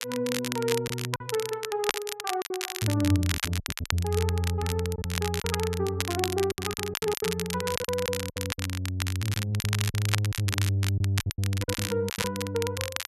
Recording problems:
crackling; vinyl, SNR 4 dB
lost packets; 12% of the sound replaced, filled with silence

